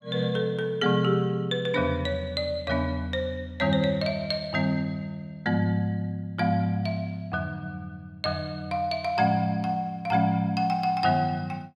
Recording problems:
none

